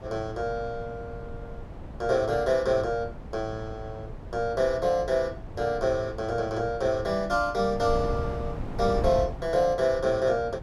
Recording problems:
wind on the microphone; below 230 Hz, SNR 11 dB

